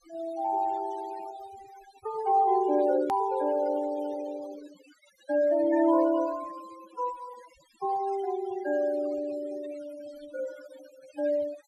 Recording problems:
denoising artefacts; signal-to-artefact ratio 18 dB
click at an edit; at 3 s

